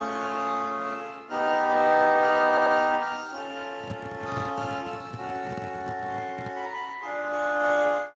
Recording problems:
lossy codec; Speex, log-spectral distance 5 dB
stutter; at 2.5 s
handling noise; from 4 to 6.5 s; peak -5 dB vs average level

